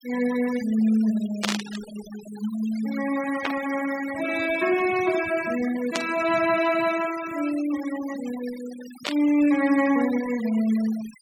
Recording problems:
noise reduction artefacts; signal-to-artefact ratio 15 dB
burst of static; 4 times, first at 1.5 s; peak +3 dB vs average level

